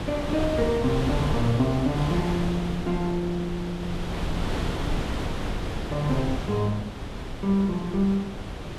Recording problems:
wind on the microphone; below 570 Hz, SNR 5 dB

